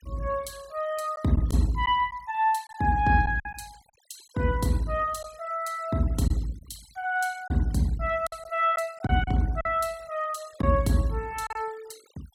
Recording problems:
noise reduction artefacts; signal-to-artefact ratio 24 dB
lost packets; 4% of the sound replaced, filled with silence

